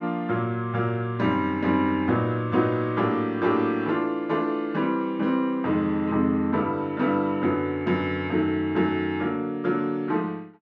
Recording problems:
none

